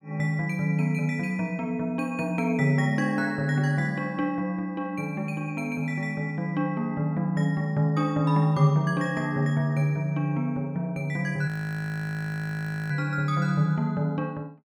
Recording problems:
audio freezing; at 11 s for 1.5 s

